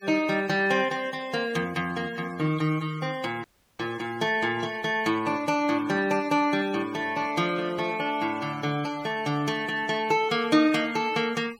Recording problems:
noise reduction artefacts; signal-to-artefact ratio 20 dB
dropout; at 3.5 s

